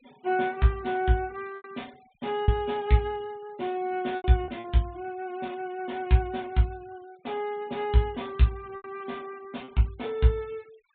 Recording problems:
treble missing; nothing above 4 kHz
noise reduction artefacts; signal-to-artefact ratio 27 dB
packet loss; 4% of the sound replaced, filled with repeated pitch periods

